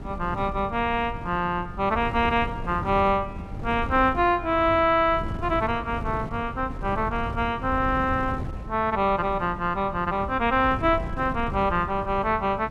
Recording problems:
wind on the microphone; below 200 Hz, SNR 11 dB

